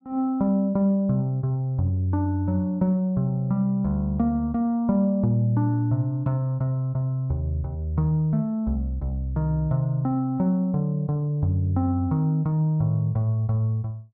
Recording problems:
none

